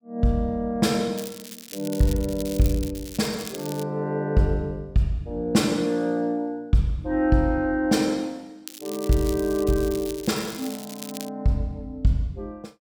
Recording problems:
crackling; from 1 to 4 s and from 8.5 to 11 s; loose cable, SNR 14 dB

